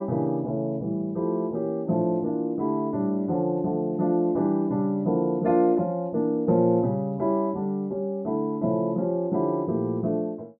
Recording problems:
none

